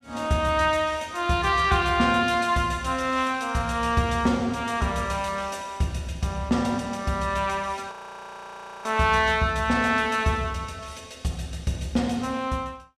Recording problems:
audio freezing; at 8 s for 1 s

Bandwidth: 14.5 kHz